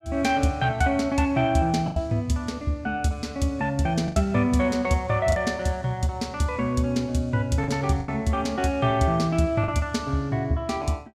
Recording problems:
packet loss; 3% of the sound replaced, filled with the last packet

